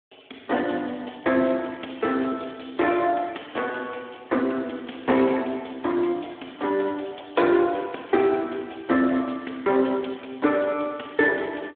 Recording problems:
telephone audio; 220 Hz to 3.5 kHz, Speex

